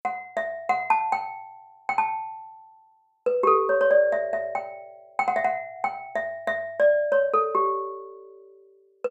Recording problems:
none

